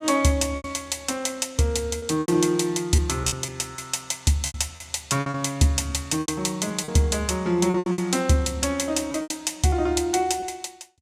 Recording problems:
lost packets; 9% of the sound replaced, filled with repeated pitch periods

